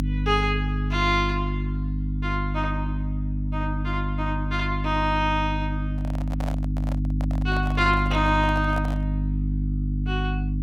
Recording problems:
hum; 50 Hz, harmonics up to 300 Hz, SNR 1 dB
handling noise; from 6 to 9 s; peak -4 dB vs average level

